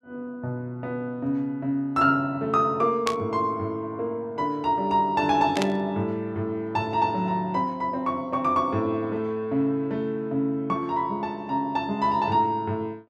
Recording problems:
static burst; at 3 s and at 5.5 s; peak 0 dB vs average level

